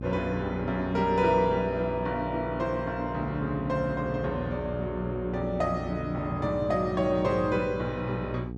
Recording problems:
hum; 60 Hz, harmonics up to 780 Hz, SNR 8 dB

